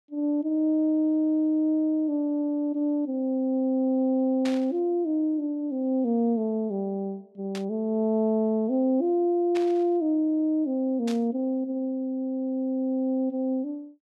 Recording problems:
static burst; 4 times, first at 4.5 s; peak -7 dB vs average level

